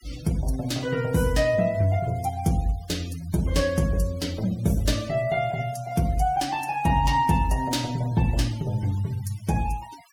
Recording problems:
denoising artefacts; signal-to-artefact ratio 21 dB

